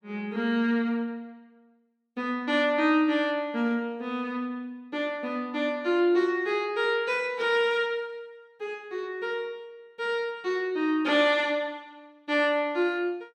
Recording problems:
none

